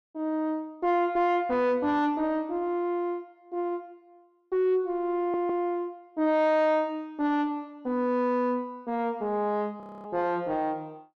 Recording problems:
distortion; soft clipping, signal-to-distortion ratio 9 dB
audio stuttering; at 5 s
frozen audio; at 10 s

